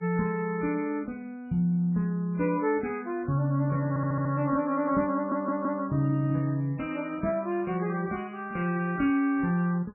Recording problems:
codec artefacts; MP3, log-spectral distance 2 dB, nothing above 2.4 kHz
stutter; at 4 s and at 5 s

